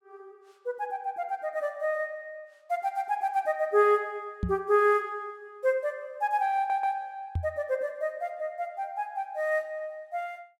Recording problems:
microphone thump; at 4.5 s and at 7.5 s; peak +2 dB vs average level
audio stuttering; at 6.5 s

